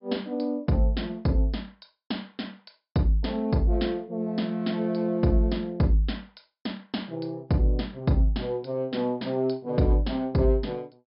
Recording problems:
treble cut off; nothing above 5.5 kHz

